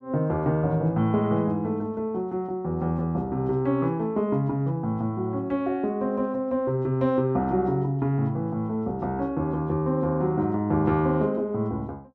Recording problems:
none

